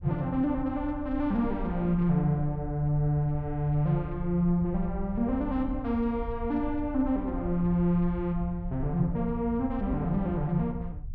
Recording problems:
rumble; below 72 Hz, SNR 11 dB

